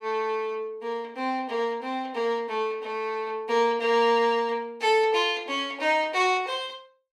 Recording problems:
none

